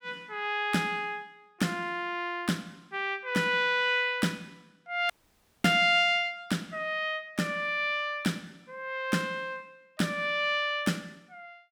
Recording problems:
dropout; at 5 s for 0.5 s

